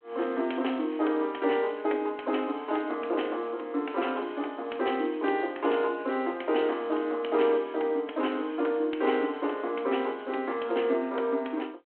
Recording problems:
telephone audio; 240 Hz to 3.3 kHz, G.726

